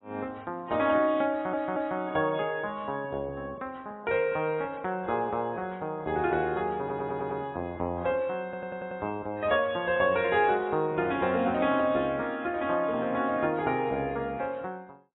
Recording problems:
lossy compression; AAC, log-spectral distance 2 dB, nothing above 3.4 kHz
audio stuttering; at 1.5 s, at 7 s and at 8.5 s

